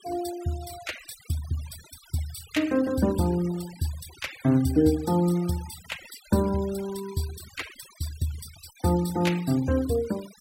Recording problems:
noise reduction artefacts; signal-to-artefact ratio 17 dB

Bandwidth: 16 kHz